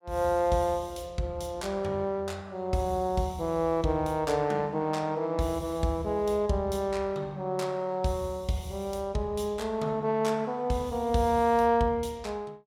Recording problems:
none

